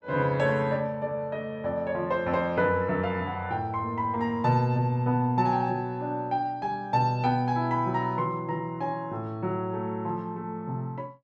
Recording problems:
none

